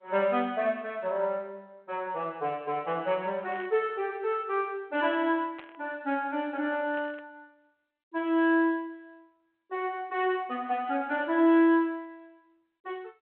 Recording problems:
telephone audio; 220 Hz to 3.3 kHz, G.726
burst of static; at 3.5 s, at 5.5 s and at 7 s; peak -13 dB vs average level

